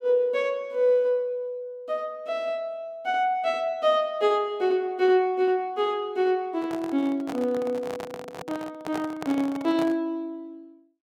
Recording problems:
microphone handling noise; from 6.5 to 10 s; peak -5 dB vs average level

